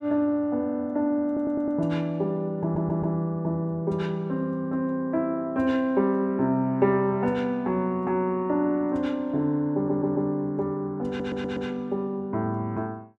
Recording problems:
audio stuttering; 4 times, first at 1.5 s

